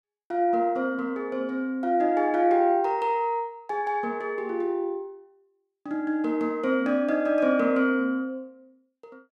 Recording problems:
none

